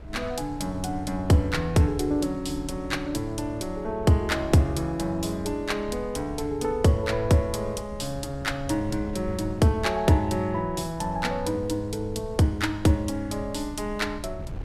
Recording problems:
wind noise; below 120 Hz, SNR 14 dB

